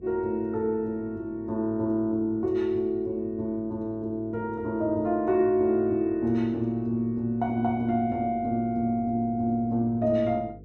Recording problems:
hum; 50 Hz, harmonics up to 500 Hz, SNR 23 dB

